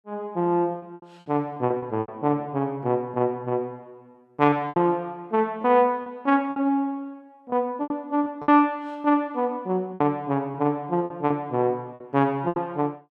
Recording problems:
lost packets; 9% of the sound replaced, filled with repeated pitch periods

